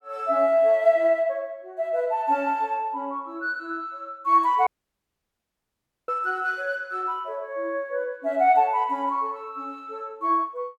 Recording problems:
audio cutting out; at 4.5 s for 1.5 s

